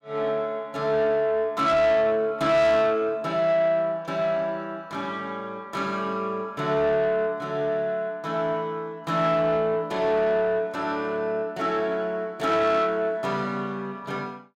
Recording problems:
distortion; soft clipping, signal-to-distortion ratio 11 dB

